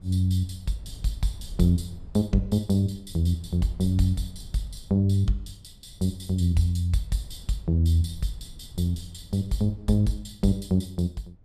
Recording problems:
low-frequency rumble; below 90 Hz, SNR 20 dB

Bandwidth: 15 kHz